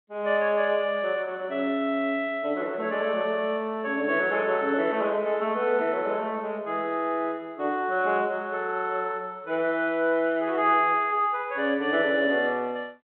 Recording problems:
phone line; 190 Hz to 3.5 kHz, G.726

